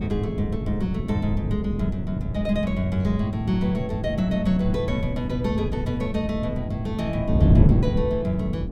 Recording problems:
wind noise; below 190 Hz, SNR 0 dB

